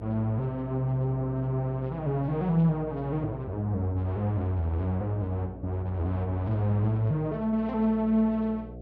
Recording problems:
hum; 60 Hz, harmonics up to 720 Hz, SNR 15 dB

